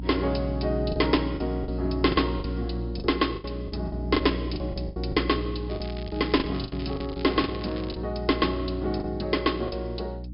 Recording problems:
treble cut off; nothing above 5.5 kHz
distorted audio; hard clipping, uneven, signal-to-distortion ratio 12 dB
mains hum; 60 Hz, harmonics up to 300 Hz, SNR 6 dB
packet loss; 11% of the sound replaced, filled with the last packet
crackle; from 5.5 to 8 s; loose cable, SNR 18 dB

